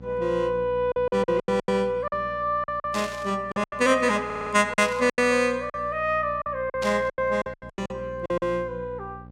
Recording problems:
hum; 60 Hz, harmonics up to 840 Hz, SNR 19 dB
packet loss; 13% of the sound replaced, filled with silence
burst of static; at 3 s, at 5 s and at 7 s; peak -5 dB vs average level
audio stuttering; at 4.5 s

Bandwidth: 17 kHz